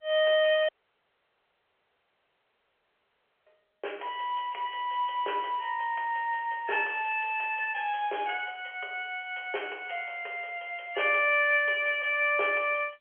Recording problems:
telephone audio; 340 Hz to 3.3 kHz, G.711
dropout; at 0.5 s for 3 s

